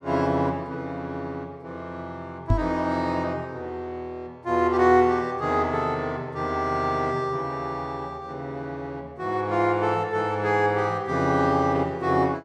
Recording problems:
microphone thump; at 2.5 s; peak +7 dB vs average level

